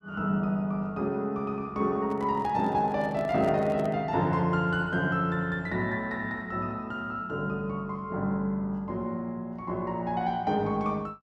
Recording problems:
microphone handling noise; from 2 to 4 s; peak -7 dB vs average level

